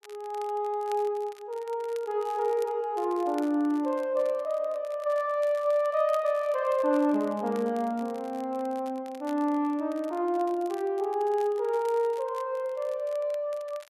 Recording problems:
crackle; vinyl, SNR 25 dB

